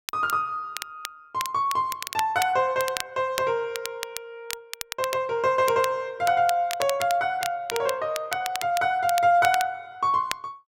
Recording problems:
crackling; vinyl, SNR 11 dB

